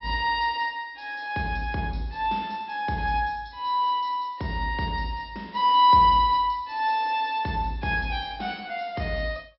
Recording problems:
treble missing; nothing above 5.4 kHz

